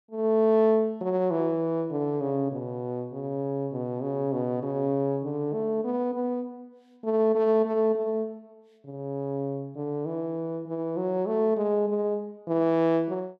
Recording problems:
none

